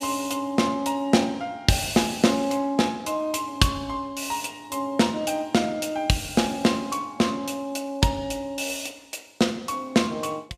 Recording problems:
none

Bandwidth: 15 kHz